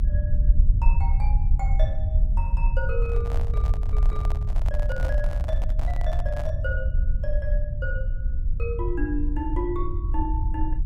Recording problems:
rumble; below 64 Hz, SNR -8 dB
handling noise; from 3 to 6.5 s; peak 0 dB vs average level

